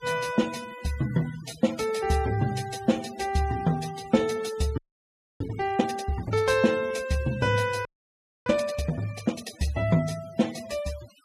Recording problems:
denoising artefacts; signal-to-artefact ratio 18 dB
audio freezing; at 5 s for 0.5 s and at 8 s for 0.5 s

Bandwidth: 14.5 kHz